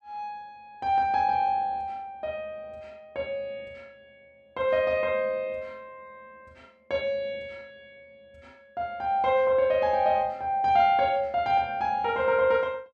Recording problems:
none

